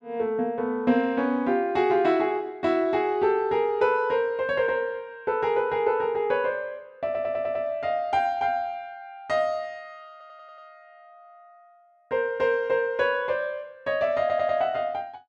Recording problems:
audio stuttering; at 7 s, at 10 s and at 14 s

